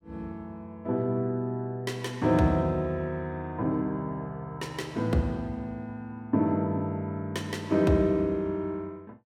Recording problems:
none

